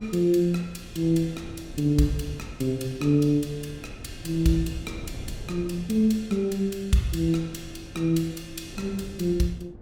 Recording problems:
wind on the microphone; below 230 Hz, SNR 17 dB

